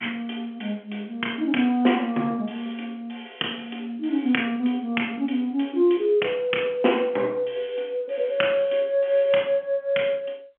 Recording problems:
phone line; 190 Hz to 3.3 kHz, G.711

